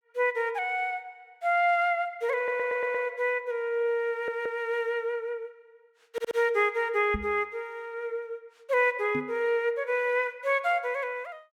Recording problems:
stutter; at 2.5 s, at 4 s and at 6 s
knock on the microphone; at 7 s and at 9 s; peak -2 dB vs average level

